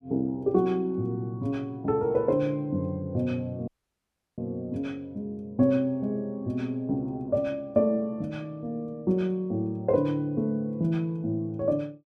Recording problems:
dropout; at 3.5 s for 0.5 s

